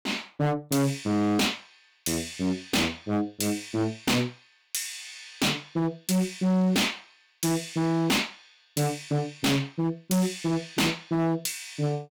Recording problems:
distorted audio; hard clipping, signal-to-distortion ratio 6 dB

